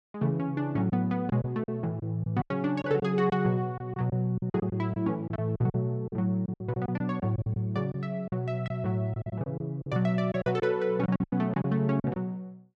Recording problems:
packet loss; 12% of the sound replaced, filled with silence

